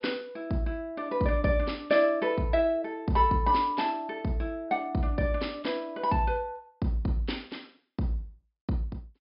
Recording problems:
treble cut off; nothing above 5.5 kHz

